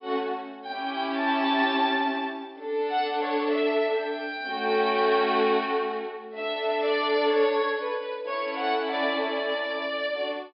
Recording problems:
low-pass filter; nothing above 5.5 kHz

